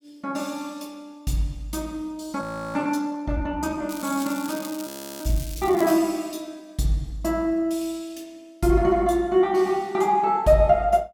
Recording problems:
audio freezing; at 2.5 s and at 5 s
crackle; from 4 to 6 s; loose cable, SNR 15 dB

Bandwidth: 17 kHz